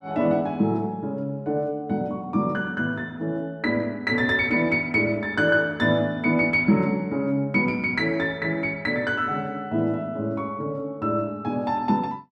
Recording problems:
none

